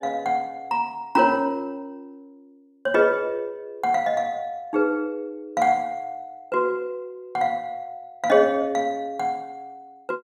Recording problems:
none

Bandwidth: 15 kHz